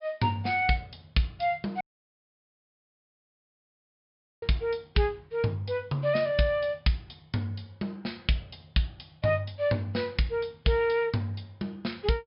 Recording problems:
treble cut off; nothing above 5.5 kHz
dropout; at 2 s for 2.5 s

